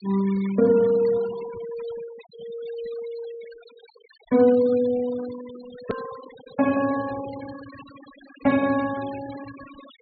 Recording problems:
low-pass filter; nothing above 4.4 kHz
denoising artefacts; signal-to-artefact ratio 19 dB
click at an edit; at 6 s

